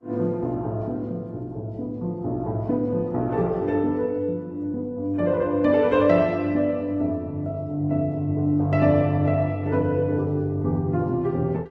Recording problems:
codec artefacts; Vorbis, then Opus, log-spectral distance 2 dB

